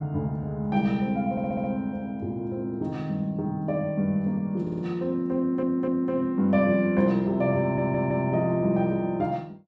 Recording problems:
stutter; 4 times, first at 1.5 s

